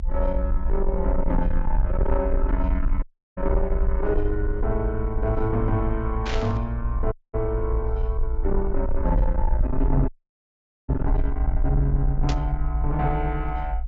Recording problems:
treble missing; nothing above 7.5 kHz
distorted audio; soft clipping, signal-to-distortion ratio 11 dB
rumble; below 56 Hz, SNR 0 dB
dropout; at 3 s, at 7 s and at 10 s for 1 s
burst of static; at 6.5 s and at 12 s; peak -1 dB vs average level

